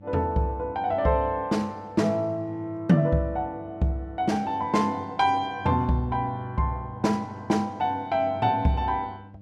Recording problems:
hum; 50 Hz, harmonics up to 600 Hz, SNR 20 dB

